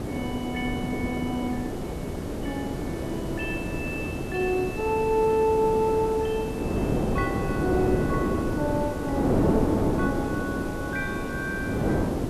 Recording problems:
background hiss; SNR 16 dB
wind on the microphone; below 470 Hz, SNR 0 dB

